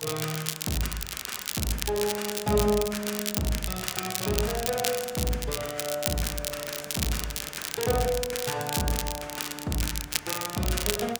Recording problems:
hiss; slope -5 dB per octave, SNR 20 dB
crackling; vinyl, SNR 1 dB

